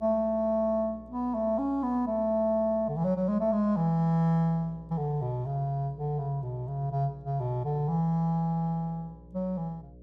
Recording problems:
hum; 60 Hz, harmonics up to 600 Hz, SNR 22 dB

